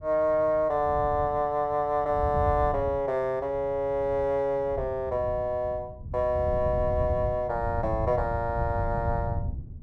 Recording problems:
wind on the microphone; below 120 Hz, SNR 8 dB

